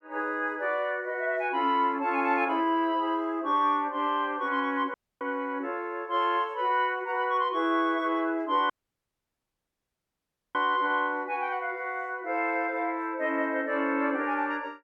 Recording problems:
audio cutting out; at 5 s and at 8.5 s for 2 s

